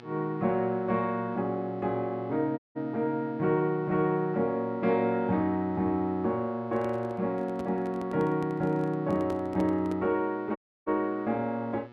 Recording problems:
hum; 60 Hz, harmonics up to 3.5 kHz, SNR 21 dB
dropout; at 2.5 s and at 11 s
microphone handling noise; from 6.5 to 10 s; peak -6 dB vs average level

